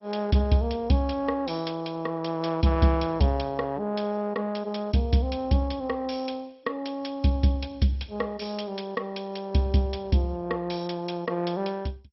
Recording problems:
lossy compression; MP2, log-spectral distance 4 dB, nothing above 5.5 kHz

